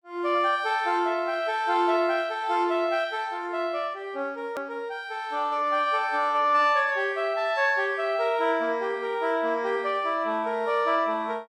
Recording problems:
hard cut with a click; at 4.5 s

